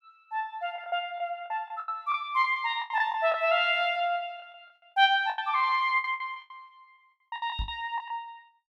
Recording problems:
lost packets; 14% of the sound replaced, filled with the last packet
knock on the microphone; at 7.5 s; peak -2 dB vs average level

